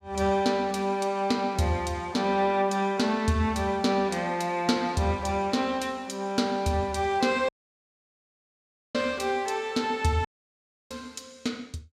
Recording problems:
audio cutting out; at 7.5 s for 1.5 s and at 10 s for 0.5 s

